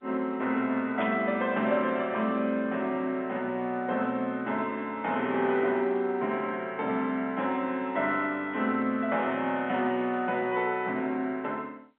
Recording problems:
phone line; 150 Hz to 3.6 kHz, G.711
static burst; at 1 s; peak -7 dB vs average level

